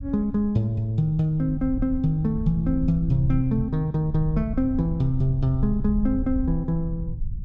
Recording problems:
low-frequency rumble; below 78 Hz, SNR 8 dB

